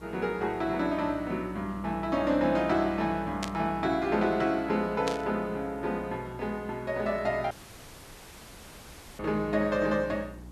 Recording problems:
hum; 60 Hz, harmonics up to 360 Hz, SNR 18 dB
hiss; SNR 25 dB
burst of static; at 3.5 s and at 5 s; peak -1 dB vs average level
audio cutting out; at 7.5 s for 1.5 s

